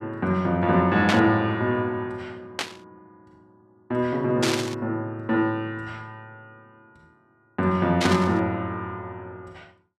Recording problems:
static burst; 4 times, first at 1 s; peak +3 dB vs average level

